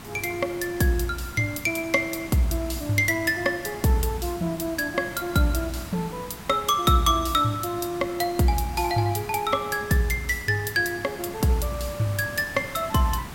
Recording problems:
background hiss; SNR 15 dB

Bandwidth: 16.5 kHz